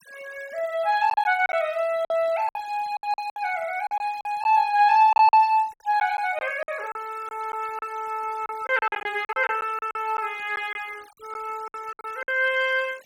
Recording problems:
denoising artefacts; signal-to-artefact ratio 25 dB
packet loss; 10% of the sound replaced, filled with silence

